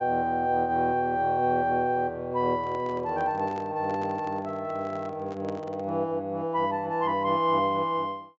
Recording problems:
treble missing; nothing above 7.6 kHz
microphone handling noise; from 2.5 to 6 s; peak -10 dB vs average level

